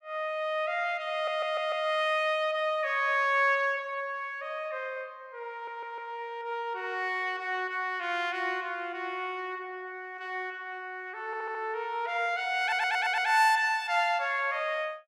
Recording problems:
audio stuttering; 4 times, first at 1 s

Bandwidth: 14.5 kHz